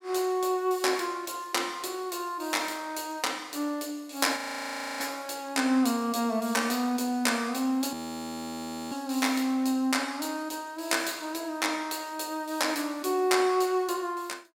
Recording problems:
frozen audio; at 4.5 s for 0.5 s and at 8 s for 1 s

